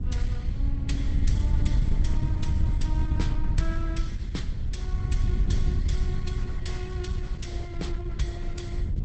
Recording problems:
codec artefacts; Opus, log-spectral distance 2 dB, nothing above 8 kHz
wind noise; below 88 Hz, SNR -10 dB

